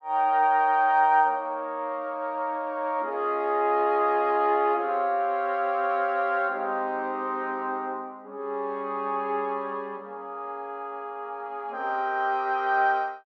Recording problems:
none

